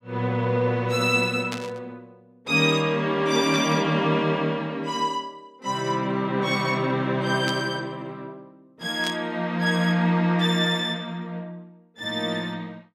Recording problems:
static burst; 4 times, first at 1.5 s; peak -4 dB vs average level

